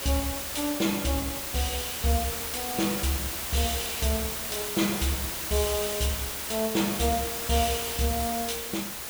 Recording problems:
background hiss; slope -1 dB per octave, SNR 2 dB

